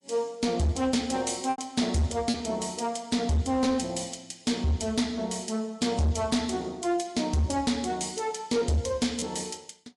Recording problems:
lossy codec; MP3, log-spectral distance 3 dB, nothing above 11 kHz
distorted audio; hard clipping, signal-to-distortion ratio 11 dB
lost packets; 1.7% of the sound replaced, filled with repeated pitch periods

